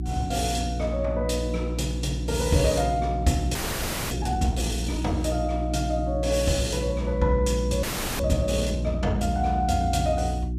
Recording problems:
electrical hum; 60 Hz, harmonics up to 360 Hz, SNR 3 dB
frozen audio; at 3.5 s for 0.5 s and at 8 s

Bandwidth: 14.5 kHz